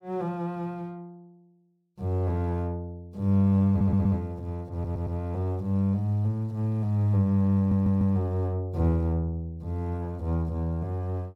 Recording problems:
audio stuttering; at 3.5 s, at 4.5 s and at 7.5 s

